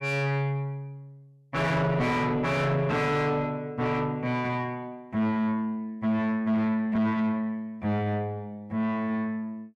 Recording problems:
distorted audio; soft clipping, signal-to-distortion ratio 6 dB

